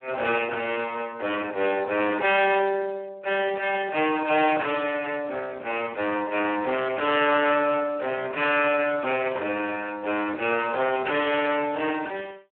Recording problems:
telephone audio; 320 Hz to 3.2 kHz, Speex
distortion; hard clipping, uneven, signal-to-distortion ratio 10 dB

